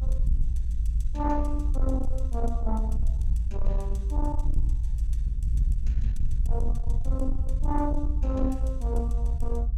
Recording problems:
distortion; soft clipping, signal-to-distortion ratio 11 dB
rumble; below 56 Hz, SNR -5 dB

